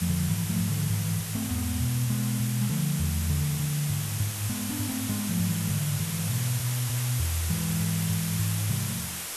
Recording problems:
background hiss; slope 0 dB per octave, SNR 4 dB

